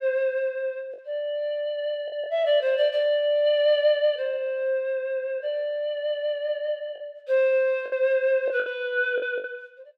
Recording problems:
lost packets; 4% of the sound replaced, filled with the last packet

